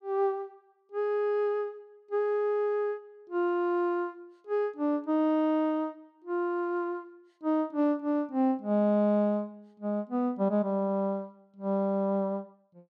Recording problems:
none

